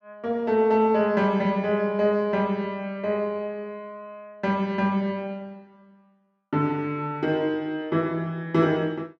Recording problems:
none

